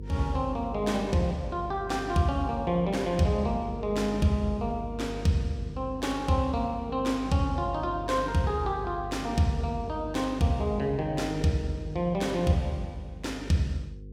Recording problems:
hum; 50 Hz, harmonics up to 500 Hz, SNR 13 dB

